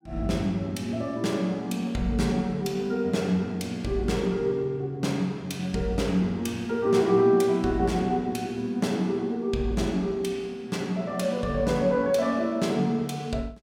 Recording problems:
none

